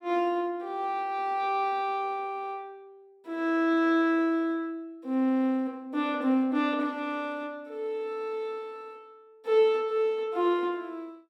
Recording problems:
none

